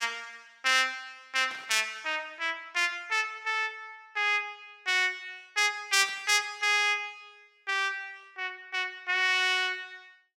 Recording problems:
burst of static; at 1.5 s and at 6 s; peak -12 dB vs average level

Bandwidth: 17 kHz